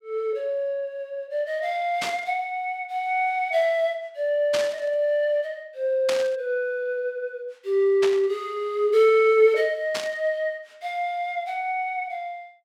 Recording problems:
burst of static; 5 times, first at 2 s; peak 0 dB vs average level

